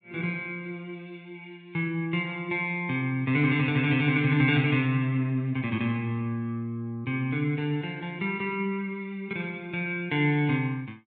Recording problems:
treble cut off; nothing above 4 kHz

